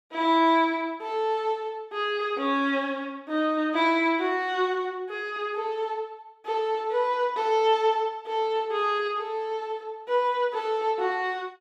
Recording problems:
none

